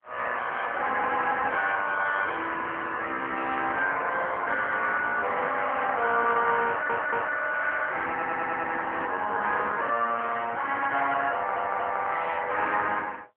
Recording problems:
telephone audio; 300 Hz to 3.3 kHz, AMR-NB
stutter; at 6.5 s, at 8 s and at 11 s

